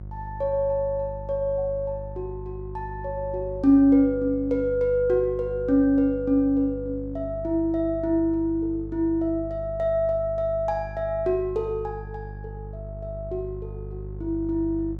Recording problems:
mains hum; 50 Hz, harmonics up to 550 Hz, SNR 13 dB

